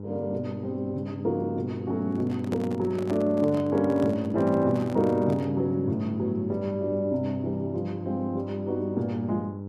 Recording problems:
hum; 50 Hz, harmonics up to 900 Hz, SNR 9 dB
microphone handling noise; from 2 to 5.5 s; peak -5 dB vs average level

